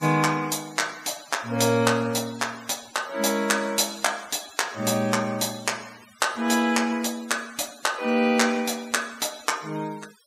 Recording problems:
noise reduction artefacts; signal-to-artefact ratio 19 dB

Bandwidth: 15.5 kHz